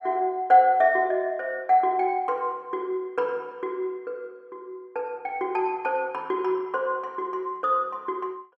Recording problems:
none

